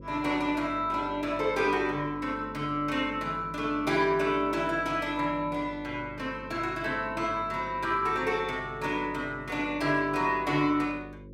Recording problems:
hum; 50 Hz, harmonics up to 550 Hz, SNR 17 dB

